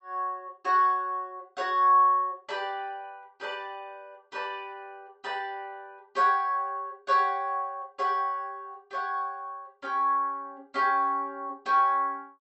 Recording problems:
treble cut off; nothing above 7.9 kHz

